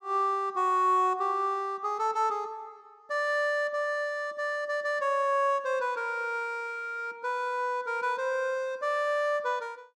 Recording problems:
none

